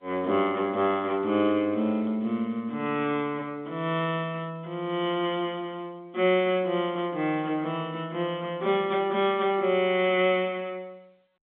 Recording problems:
phone line; 240 Hz to 3.6 kHz, G.711

